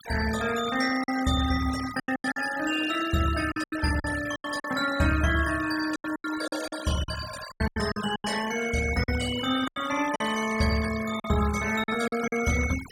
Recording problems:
noise reduction artefacts; signal-to-artefact ratio 12 dB
packet loss; 11% of the sound replaced, filled with silence

